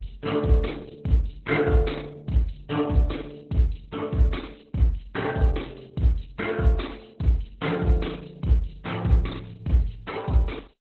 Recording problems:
lossy compression; Opus, then Opus, log-spectral distance 5 dB

